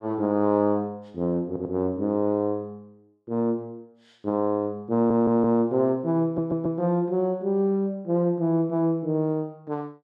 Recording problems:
stutter; at 1.5 s, at 5 s and at 6 s

